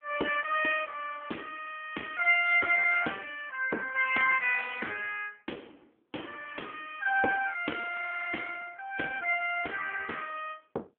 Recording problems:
telephone audio; 280 Hz to 3.3 kHz, AMR-NB

